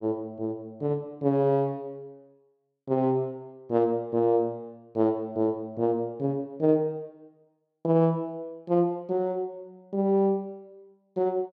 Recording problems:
none

